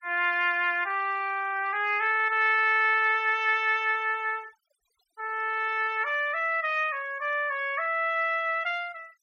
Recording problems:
noise reduction artefacts; signal-to-artefact ratio 27 dB

